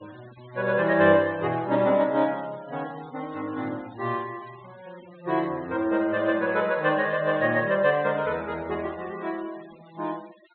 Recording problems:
treble cut off; nothing above 4 kHz
noise reduction artefacts; signal-to-artefact ratio 23 dB

